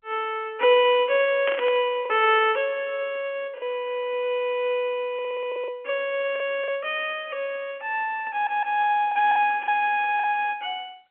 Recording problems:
phone line; 240 Hz to 3.3 kHz, G.711
lost packets; 4% of the sound replaced, filled with the last packet
burst of static; at 1.5 s; peak -2 dB vs average level
audio stuttering; at 5 s and at 8.5 s

